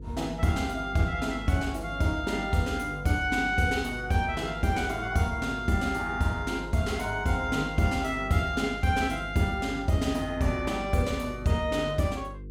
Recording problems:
hum; 50 Hz, harmonics up to 500 Hz, SNR 13 dB

